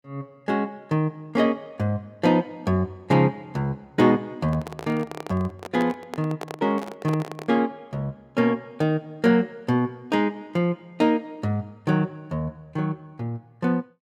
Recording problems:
microphone handling noise; from 4.5 to 7.5 s; peak -4 dB vs average level

